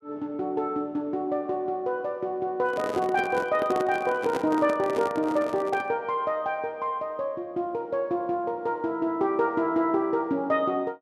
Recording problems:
microphone handling noise; from 2.5 to 6 s; peak -1 dB vs average level

